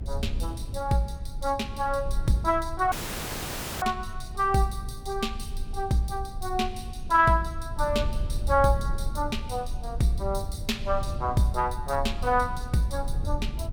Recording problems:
rumble; below 78 Hz, strongest tone 22 Hz, SNR 8 dB
dropout; at 3 s for 1 s

